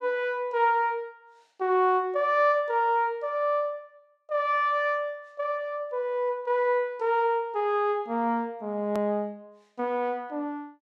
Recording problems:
hard cut with a click; at 9 s

